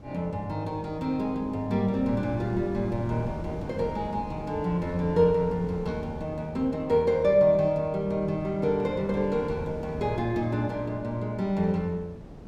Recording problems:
wind on the microphone; below 350 Hz, SNR 14 dB

